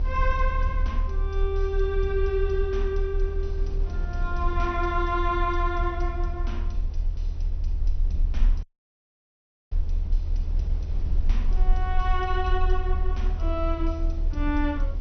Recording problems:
low-pass filter; nothing above 6.1 kHz
low-frequency rumble; below 38 Hz, strongest tone 30 Hz, SNR -1 dB
wind on the microphone; below 150 Hz, SNR 11 dB
dropout; at 8.5 s for 1 s

